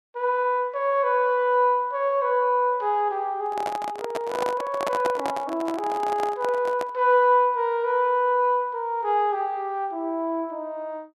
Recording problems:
handling noise; from 3.5 to 7 s; peak -1 dB vs average level

